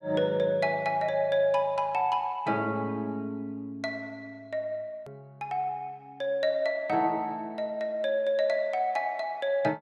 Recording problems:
hard cut with a click; at 5 s

